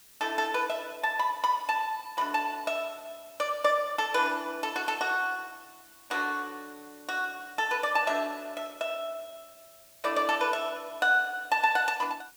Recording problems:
hiss; slope +1 dB per octave, SNR 24 dB

